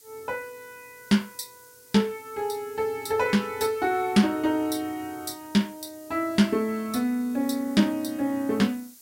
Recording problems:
hiss; SNR 23 dB

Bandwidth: 16 kHz